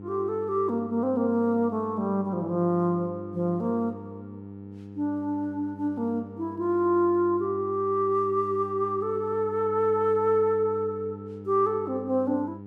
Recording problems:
electrical hum; 50 Hz, harmonics up to 900 Hz, SNR 15 dB

